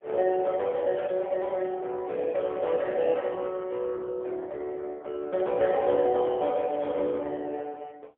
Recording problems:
phone line; 260 Hz to 3.8 kHz, AMR-NB, then MP3

